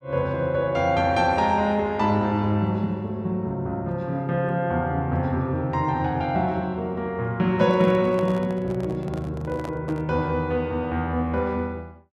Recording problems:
handling noise; from 7.5 to 10 s; peak -8 dB vs average level

